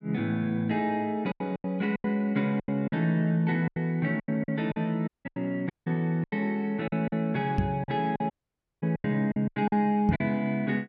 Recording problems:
lost packets; 12% of the sound replaced, filled with silence
dropout; at 5 s, at 5.5 s and at 8.5 s for 0.5 s
knock on the microphone; at 7.5 s and at 10 s; peak +6 dB vs average level

